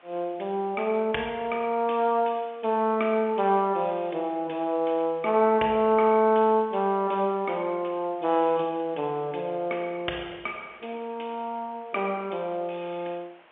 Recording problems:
phone line; 260 Hz to 3.3 kHz, G.711
background hiss; SNR 29 dB

